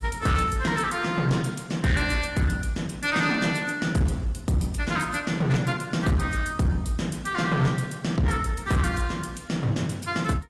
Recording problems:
codec artefacts; AAC, log-spectral distance 4 dB, nothing above 12 kHz
distortion; hard clipping, uneven, signal-to-distortion ratio 10 dB

